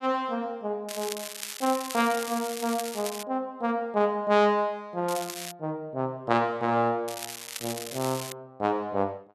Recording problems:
crackle; from 1 to 3 s, at 5 s and from 7 to 8.5 s; loose cable, SNR 9 dB

